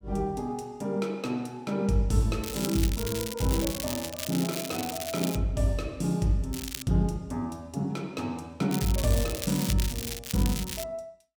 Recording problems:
crackling; from 2.5 to 5.5 s, at 6.5 s and from 8.5 to 11 s; loose cable, SNR 6 dB

